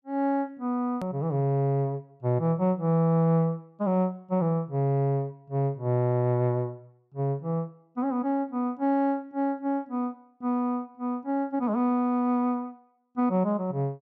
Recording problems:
hard cut with a click; at 1 s

